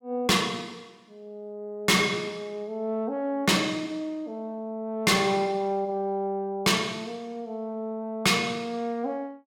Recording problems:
distortion; hard clipping, signal-to-distortion ratio 6 dB

